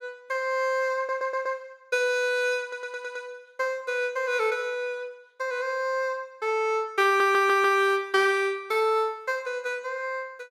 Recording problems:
audio stuttering; at 1 s, at 2.5 s and at 7 s

